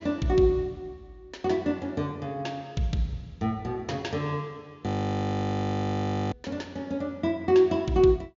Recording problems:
treble missing; nothing above 7.2 kHz
audio freezing; at 5 s for 1.5 s

